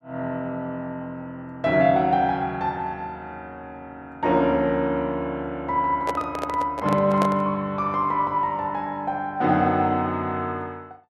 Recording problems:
microphone handling noise; from 6 to 7.5 s; peak +1 dB vs average level

